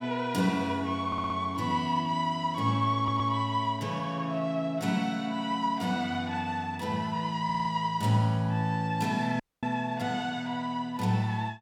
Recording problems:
audio stuttering; at 1 s, at 3 s and at 7.5 s
dropout; at 9.5 s

